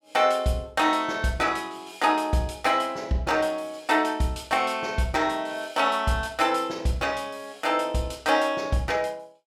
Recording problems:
none

